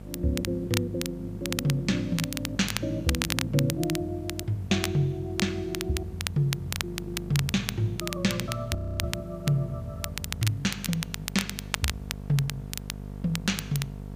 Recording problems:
hum; 50 Hz, harmonics up to 900 Hz, SNR 12 dB
hiss; slope -5 dB per octave, SNR 27 dB
crackle; vinyl, SNR 5 dB
audio freezing; at 9 s

